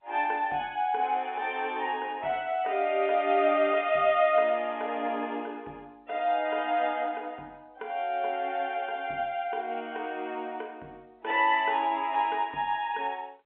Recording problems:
phone line; 260 Hz to 3.4 kHz, G.711

